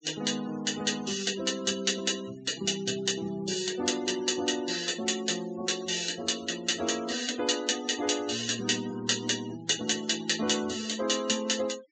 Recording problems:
low-pass filter; nothing above 8 kHz
noise reduction artefacts; signal-to-artefact ratio 16 dB

